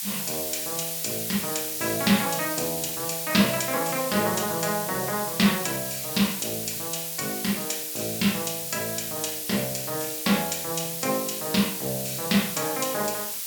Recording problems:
hiss; slope +4 dB per octave, SNR 2 dB

